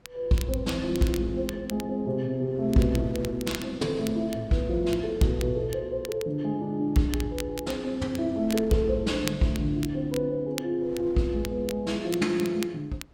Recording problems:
wind on the microphone; below 420 Hz, SNR 23 dB
crackling; vinyl, SNR 15 dB

